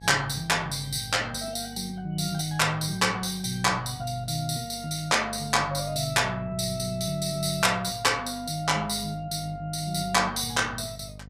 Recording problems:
hum; 50 Hz, harmonics up to 750 Hz, SNR 18 dB

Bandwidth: 15.5 kHz